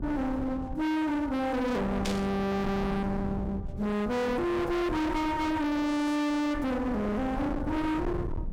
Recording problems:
distorted audio; hard clipping, uneven, signal-to-distortion ratio 5 dB
rumble; below 350 Hz, SNR 8 dB
static burst; at 2 s; peak -2 dB vs average level

